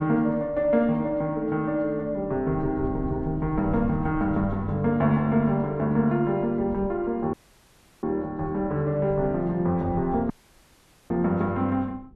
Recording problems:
wind noise; below 160 Hz, SNR 16 dB
dropout; at 7.5 s for 0.5 s and at 10 s for 1 s

